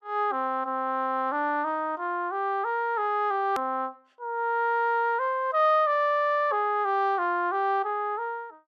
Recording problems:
edit click; at 3.5 s

